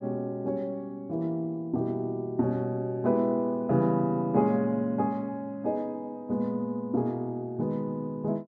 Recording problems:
none

